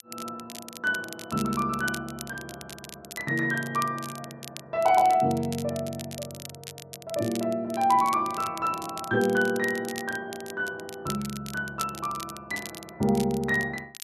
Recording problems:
crackle; vinyl, SNR 14 dB

